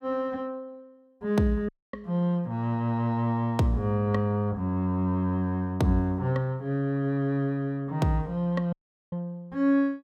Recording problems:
dropout; at 1.5 s and at 8.5 s

